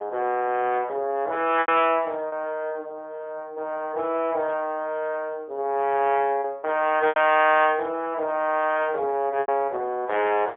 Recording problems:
telephone audio; 300 Hz to 3.4 kHz, AMR-NB, then MP3
packet loss; 3% of the sound replaced, filled with repeated pitch periods

